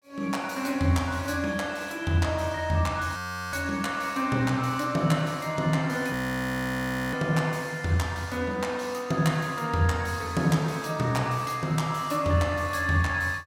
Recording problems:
frozen audio; at 3 s and at 6 s for 1 s

